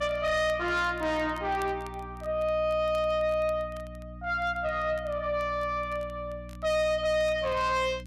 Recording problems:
distortion; soft clipping, signal-to-distortion ratio 7 dB
hum; 60 Hz, harmonics up to 300 Hz, SNR 16 dB
crackle; vinyl, SNR 29 dB

